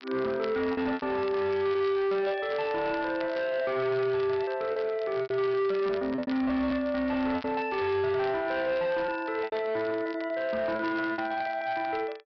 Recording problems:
treble cut off; nothing above 5.5 kHz
distortion; hard clipping, signal-to-distortion ratio 11 dB
crackling; vinyl, SNR 20 dB
lost packets; 8% of the sound replaced, filled with repeated pitch periods

